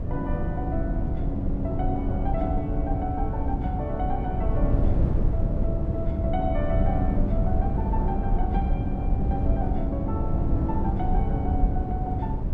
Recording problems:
wind noise; below 120 Hz, SNR -4 dB

